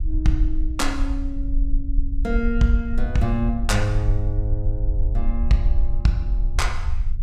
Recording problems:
low-frequency rumble; below 48 Hz, SNR 1 dB

